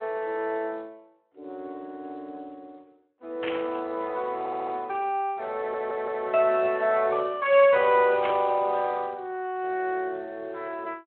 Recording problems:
phone line; 260 Hz to 3.3 kHz, Speex
burst of static; at 3.5 s and at 8 s; peak -4 dB vs average level
audio stuttering; at 4.5 s and at 5.5 s

